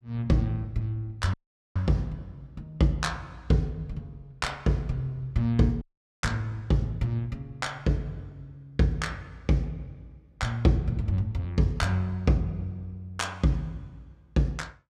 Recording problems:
dropout; at 1.5 s and at 6 s

